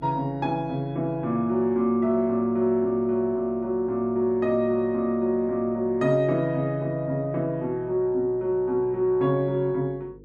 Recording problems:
hum; 50 Hz, harmonics up to 500 Hz, SNR 25 dB

